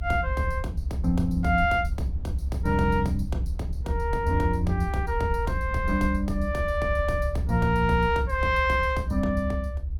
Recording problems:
rumble; below 76 Hz, strongest tone 66 Hz, SNR 5 dB

